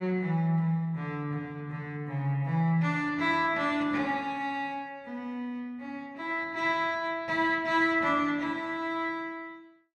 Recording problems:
none

